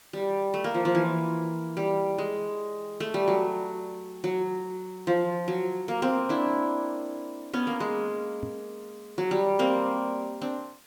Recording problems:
hiss; slope -1 dB per octave, SNR 25 dB
knock on the microphone; at 8.5 s; peak -4 dB vs average level

